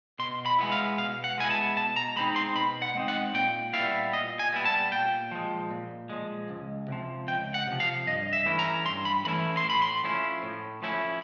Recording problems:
none

